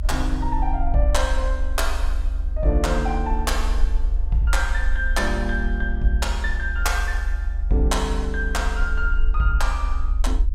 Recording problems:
low-frequency rumble; below 64 Hz, SNR 1 dB

